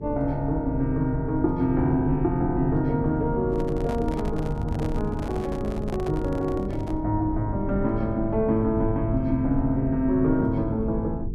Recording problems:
hum; 50 Hz, harmonics up to 450 Hz, SNR 11 dB
low-frequency rumble; below 94 Hz, SNR 10 dB
microphone handling noise; from 3.5 to 7 s; peak -7 dB vs average level

